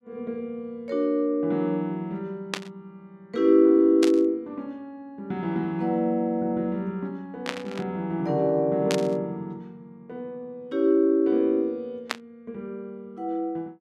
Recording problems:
static burst; 5 times, first at 2.5 s; peak +1 dB vs average level

